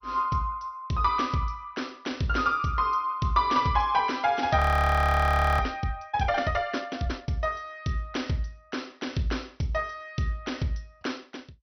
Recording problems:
codec artefacts; MP2, log-spectral distance 4 dB
audio freezing; at 4.5 s for 1 s

